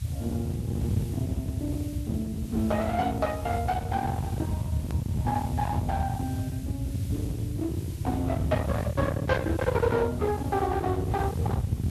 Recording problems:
codec artefacts; Vorbis, then Speex, log-spectral distance 2 dB
distortion; hard clipping, signal-to-distortion ratio 7 dB
hiss; slope +3 dB per octave, SNR 19 dB
low-frequency rumble; below 320 Hz, SNR 1 dB
edit click; at 5 s

